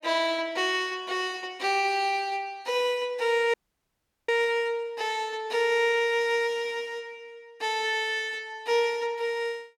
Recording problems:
audio cutting out; at 3.5 s for 0.5 s

